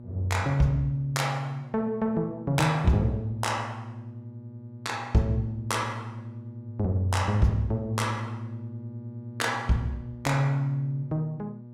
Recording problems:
electrical hum; 60 Hz, harmonics up to 600 Hz, SNR 15 dB

